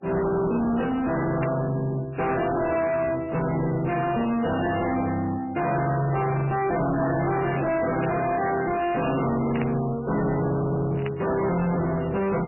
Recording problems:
codec artefacts; MP3, log-spectral distance 4 dB, nothing above 2.8 kHz
distorted audio; soft clipping, signal-to-distortion ratio 7 dB
burst of static; 4 times, first at 1.5 s; peak -6 dB vs average level

